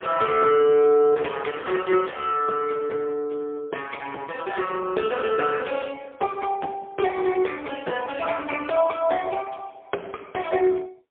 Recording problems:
telephone audio; 320 Hz to 3.3 kHz, AMR-NB, then MP3

